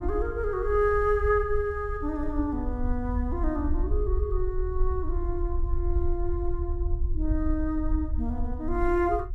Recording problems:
rumble; below 62 Hz, SNR 3 dB

